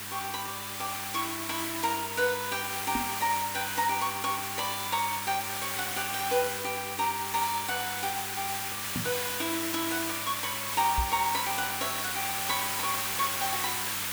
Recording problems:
electrical hum; 50 Hz, harmonics up to 900 Hz, SNR 17 dB
hiss; SNR 0 dB
microphone thump; at 3 s, at 9 s and at 11 s; peak +4 dB vs average level

